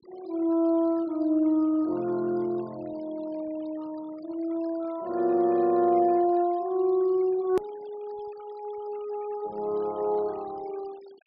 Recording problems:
low-pass filter; nothing above 5.5 kHz
denoising artefacts; signal-to-artefact ratio 26 dB
edit click; at 7.5 s

